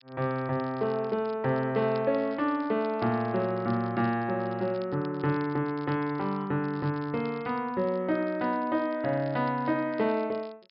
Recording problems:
treble missing; nothing above 5.5 kHz
crackling; vinyl, SNR 27 dB

